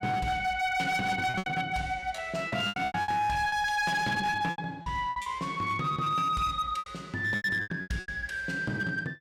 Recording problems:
distortion; hard clipping, signal-to-distortion ratio 11 dB
packet loss; 13% of the sound replaced, filled with repeated pitch periods

